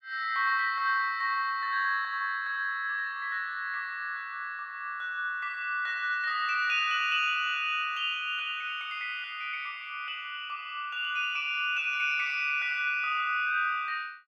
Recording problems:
none

